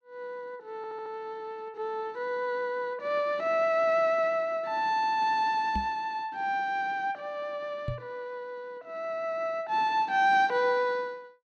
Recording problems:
stutter; at 1 s
microphone thump; at 6 s and at 8 s; peak -1 dB vs average level

